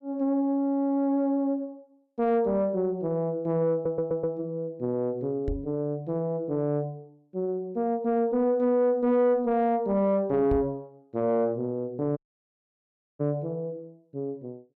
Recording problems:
distorted audio; soft clipping, signal-to-distortion ratio 11 dB
audio stuttering; at 3.5 s
microphone bump; at 5.5 s and at 11 s; peak 0 dB vs average level
audio cutting out; at 12 s for 1 s

